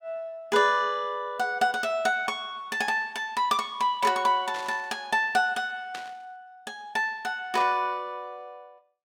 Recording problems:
static burst; at 4.5 s, at 6 s and at 7.5 s; peak -8 dB vs average level

